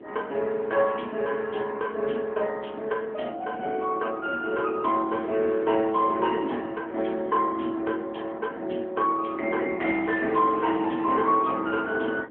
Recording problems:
telephone audio; 220 Hz to 3.3 kHz, AMR-NB
wind noise; below 470 Hz, SNR 16 dB

